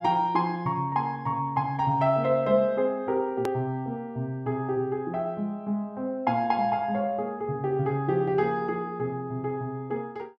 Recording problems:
hard cut with a click; at 3.5 s

